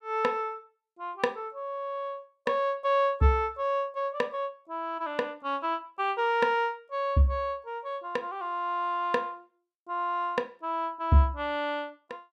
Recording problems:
none

